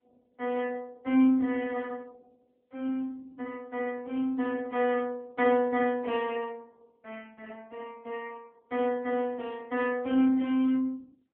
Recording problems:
telephone audio; 240 Hz to 3.4 kHz, AMR-NB

